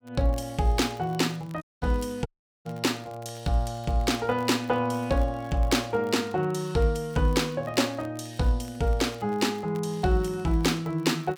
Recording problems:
crackle; vinyl, SNR 28 dB
audio cutting out; at 1.5 s and at 2.5 s

